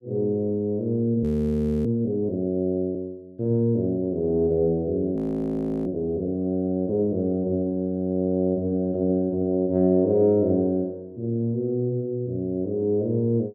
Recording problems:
frozen audio; at 1 s for 0.5 s and at 5 s for 0.5 s

